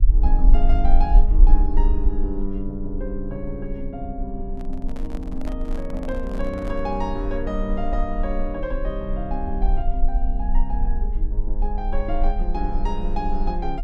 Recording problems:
rumble; below 40 Hz, strongest tone 22 Hz, SNR -4 dB
handling noise; from 4.5 to 7 s; peak -4 dB vs average level

